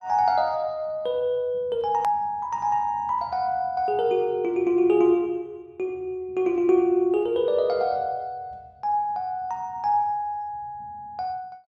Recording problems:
click at an edit; at 2 s

